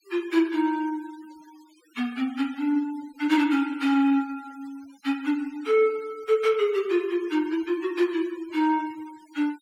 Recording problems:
denoising artefacts; signal-to-artefact ratio 23 dB

